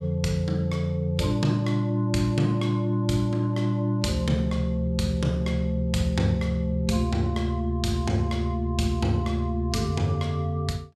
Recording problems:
none

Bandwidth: 14.5 kHz